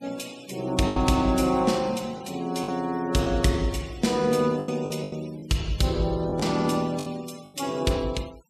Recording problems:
denoising artefacts; signal-to-artefact ratio 21 dB
packet loss; 6% of the sound replaced, filled with the last packet

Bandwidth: 14.5 kHz